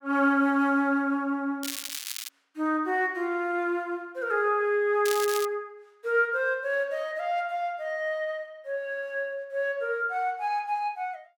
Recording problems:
crackle; at 1.5 s and at 5 s; loose cable, SNR 7 dB

